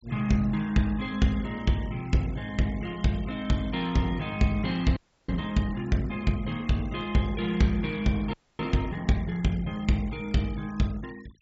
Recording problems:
low-pass filter; nothing above 8 kHz
denoising artefacts; signal-to-artefact ratio 23 dB
frozen audio; at 5 s and at 8.5 s

